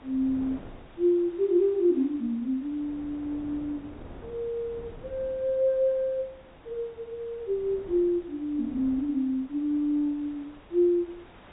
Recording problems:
low-pass filter; nothing above 4 kHz
background hiss; SNR 27 dB
wind on the microphone; below 450 Hz, SNR 22 dB

